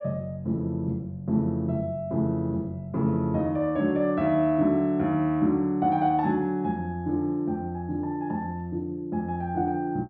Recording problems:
none

